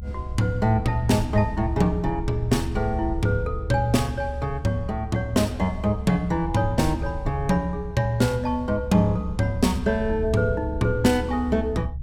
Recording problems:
low-frequency rumble; below 74 Hz, strongest tone 70 Hz, SNR 8 dB

